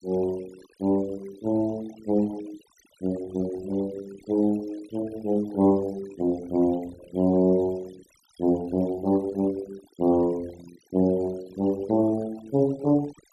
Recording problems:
denoising artefacts; signal-to-artefact ratio 21 dB

